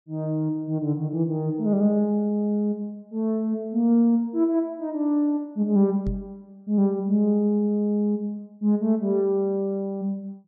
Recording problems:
microphone thump; at 6 s; peak -2 dB vs average level

